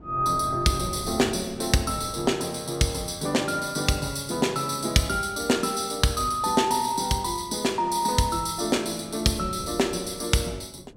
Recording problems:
wind on the microphone; below 370 Hz, SNR 18 dB

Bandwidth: 16.5 kHz